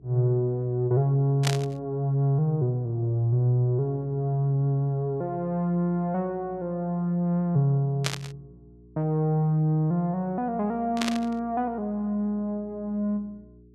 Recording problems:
mains hum; 60 Hz, harmonics up to 420 Hz, SNR 27 dB
static burst; at 1.5 s, at 8 s and at 11 s; peak +3 dB vs average level

